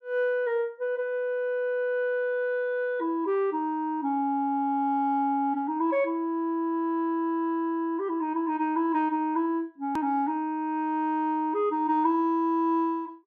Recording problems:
edit click; at 10 s

